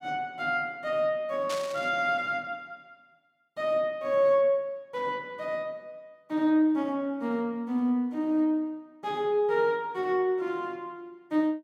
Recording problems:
static burst; at 1.5 s; peak -5 dB vs average level

